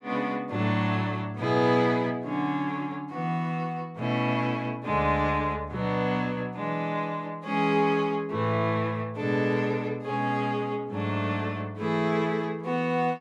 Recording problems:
none

